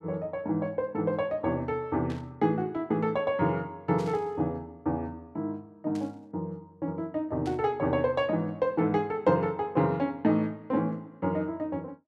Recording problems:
static burst; 4 times, first at 2 s; peak -12 dB vs average level

